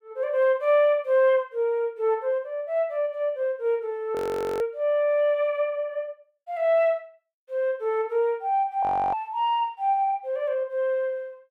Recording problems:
audio freezing; at 4 s and at 9 s

